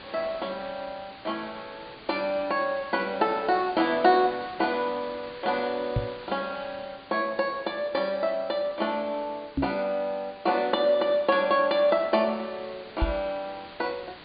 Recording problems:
treble cut off; nothing above 4.8 kHz
hiss; SNR 18 dB
microphone bump; at 6 s, at 9.5 s and at 13 s; peak +4 dB vs average level

